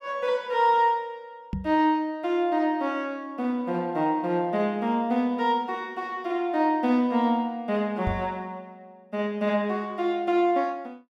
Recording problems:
microphone thump; at 1.5 s and at 8 s; peak 0 dB vs average level

